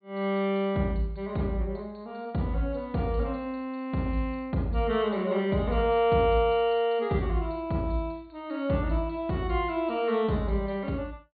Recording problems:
treble missing; nothing above 4.4 kHz

